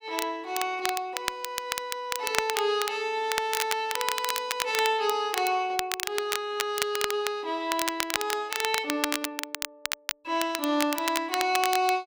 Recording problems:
crackle; vinyl, SNR 3 dB

